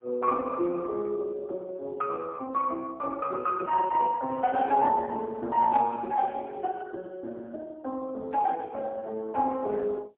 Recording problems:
telephone audio; 280 Hz to 2.5 kHz, AMR-NB, then MP3

